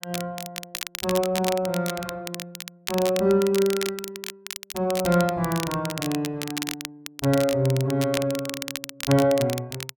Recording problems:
crackling; vinyl, SNR 9 dB

